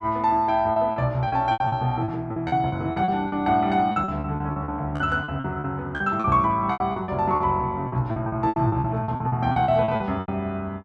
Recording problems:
packet loss; 17% of the sound replaced, filled with repeated pitch periods

